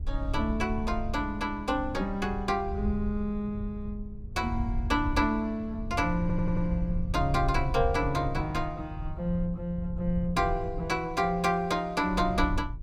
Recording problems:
wind on the microphone; below 86 Hz, SNR 7 dB
stutter; at 6 s

